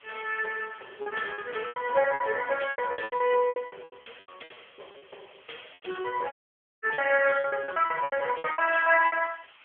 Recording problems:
phone line; 340 Hz to 3.2 kHz, AMR-NB
hiss; SNR 27 dB
packet loss; 19% of the sound replaced, filled with repeated pitch periods
audio cutting out; at 6.5 s for 0.5 s

